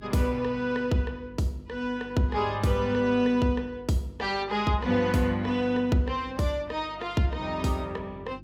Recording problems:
hum; 50 Hz, harmonics up to 350 Hz, SNR 22 dB

